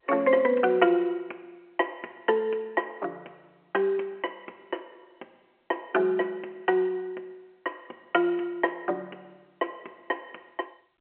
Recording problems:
telephone audio; 280 Hz to 3.1 kHz, G.711

